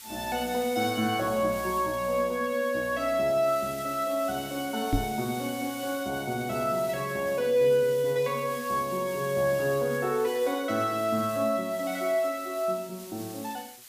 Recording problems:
background hiss; slope +3 dB per octave, SNR 15 dB
microphone bump; at 5 s; peak +5 dB vs average level

